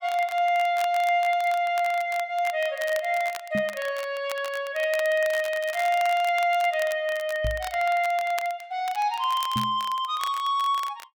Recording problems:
crackling; vinyl, SNR 17 dB
microphone thump; at 3.5 s, at 7.5 s and at 9.5 s; peak -2 dB vs average level

